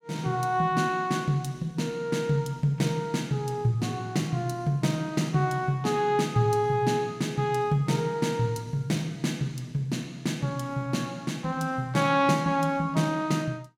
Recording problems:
none

